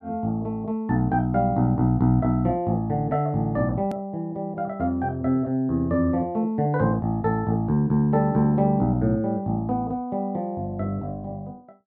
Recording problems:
edit click; at 4 s

